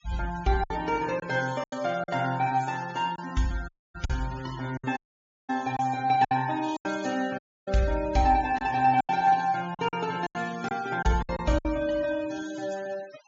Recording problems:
treble cut off; nothing above 7.3 kHz
noise reduction artefacts; signal-to-artefact ratio 19 dB
lost packets; 8% of the sound replaced, filled with silence
dropout; at 3.5 s, at 5 s for 0.5 s and at 7.5 s

